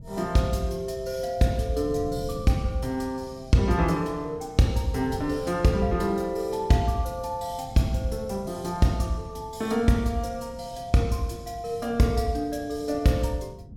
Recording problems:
wind on the microphone; below 180 Hz, SNR 16 dB

